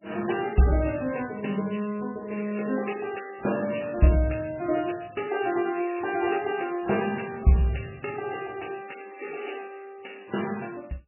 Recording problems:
codec artefacts; MP3, log-spectral distance 10 dB, nothing above 2.7 kHz

